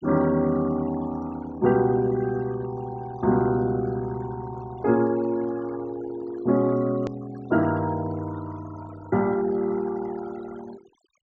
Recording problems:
low-pass filter; nothing above 8 kHz
noise reduction artefacts; signal-to-artefact ratio 19 dB
click at an edit; at 7 s

